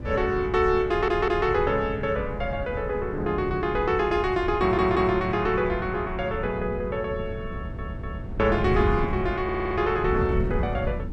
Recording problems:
wind noise; below 160 Hz, SNR 8 dB
audio stuttering; 4 times, first at 1 s

